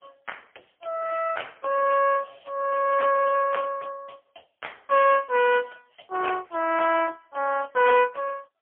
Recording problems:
telephone audio; 340 Hz to 2.8 kHz, AMR-NB, then MP3

